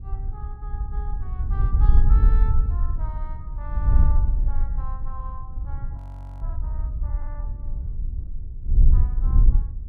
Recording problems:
wind noise; below 60 Hz, SNR -18 dB
frozen audio; at 6 s

